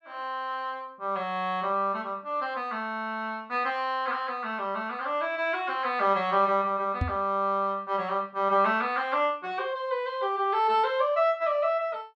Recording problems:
microphone bump; at 7 s; peak +3 dB vs average level

